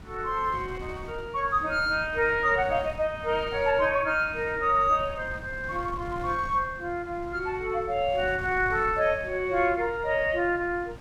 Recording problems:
wind noise; below 250 Hz, SNR 16 dB

